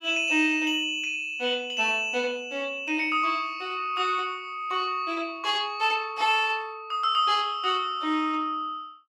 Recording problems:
none

